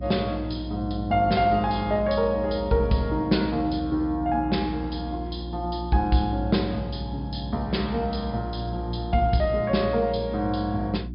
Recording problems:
low-pass filter; nothing above 5.5 kHz
hum; 60 Hz, harmonics up to 360 Hz, SNR 9 dB

